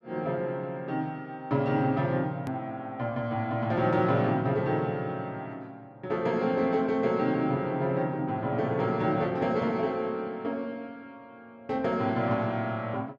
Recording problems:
hard cut with a click; at 2.5 s

